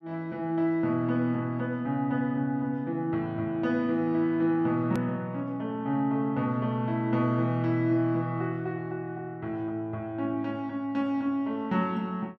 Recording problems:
edit click; at 5 s

